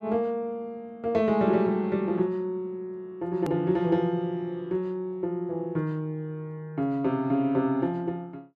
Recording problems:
hard cut with a click; at 3.5 s

